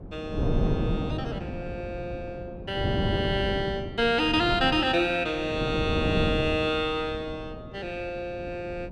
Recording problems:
wind noise; below 300 Hz, SNR 5 dB

